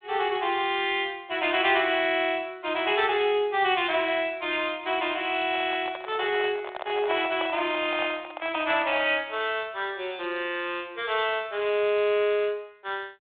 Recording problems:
telephone audio; 280 Hz to 3.7 kHz, G.726
handling noise; from 5.5 to 9 s; peak -3 dB vs average level

